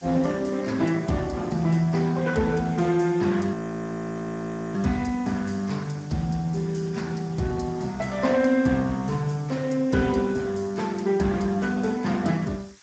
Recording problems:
codec artefacts; Speex, log-spectral distance 7 dB, nothing above 7.3 kHz
background hiss; slope +1 dB per octave, SNR 27 dB
audio freezing; at 3.5 s for 1 s

